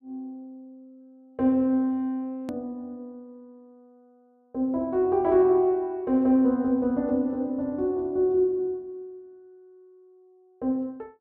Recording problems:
hard cut with a click; at 2.5 s

